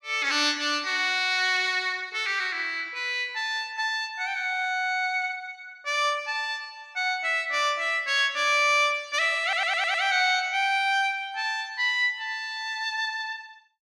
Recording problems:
stutter; at 9.5 s

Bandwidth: 14.5 kHz